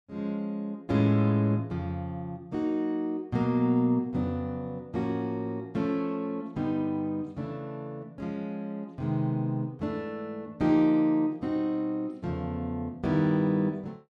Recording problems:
none

